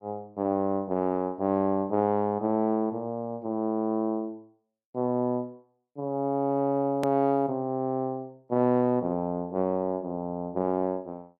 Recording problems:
edit click; at 7 s

